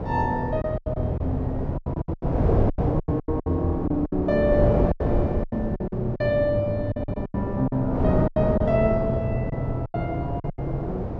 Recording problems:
hum; 50 Hz, harmonics up to 350 Hz, SNR 24 dB
wind noise; below 470 Hz, SNR 2 dB
lost packets; 14% of the sound replaced, filled with silence

